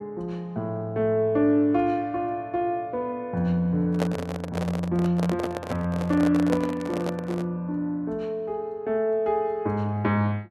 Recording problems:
handling noise; from 4 to 7.5 s; peak +2 dB vs average level

